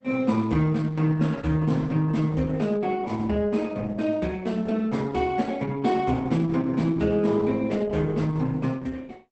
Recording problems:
lossy compression; Opus, log-spectral distance 3 dB, nothing above 8.2 kHz

